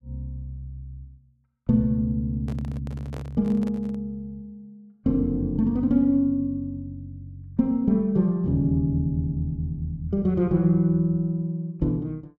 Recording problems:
microphone handling noise; from 2.5 to 4 s; peak -11 dB vs average level

